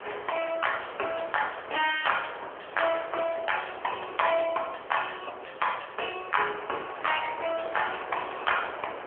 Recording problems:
phone line; 340 Hz to 3.3 kHz, AMR-NB
wind on the microphone; below 1.5 kHz, SNR 11 dB

